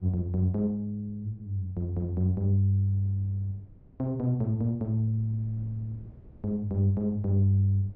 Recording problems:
wind noise; below 190 Hz, SNR 25 dB

